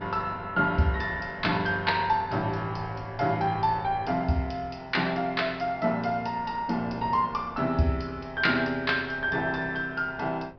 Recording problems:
treble cut off; nothing above 5.5 kHz
wind on the microphone; below 550 Hz, SNR 19 dB

